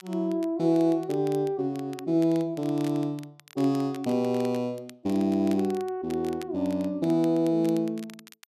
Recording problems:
crackling; vinyl, SNR 23 dB

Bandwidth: 13.5 kHz